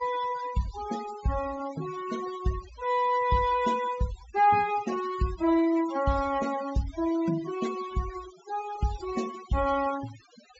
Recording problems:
treble missing; nothing above 8 kHz
noise reduction artefacts; signal-to-artefact ratio 15 dB

